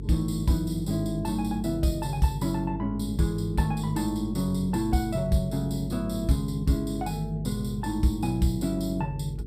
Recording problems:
hum; 50 Hz, harmonics up to 450 Hz, SNR 10 dB

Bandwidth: 15 kHz